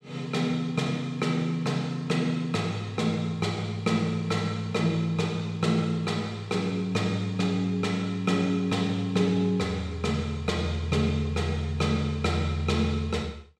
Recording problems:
none

